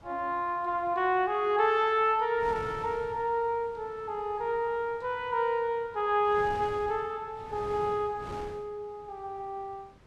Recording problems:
wind noise; below 900 Hz, SNR 19 dB

